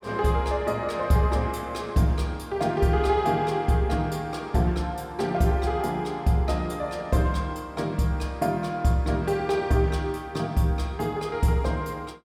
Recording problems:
none

